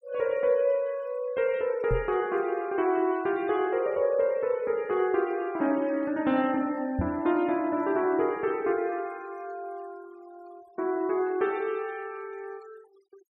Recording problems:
denoising artefacts; signal-to-artefact ratio 25 dB
microphone thump; at 2 s and at 7 s; peak +2 dB vs average level

